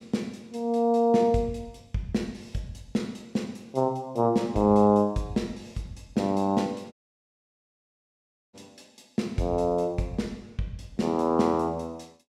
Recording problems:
audio cutting out; at 7 s for 1.5 s

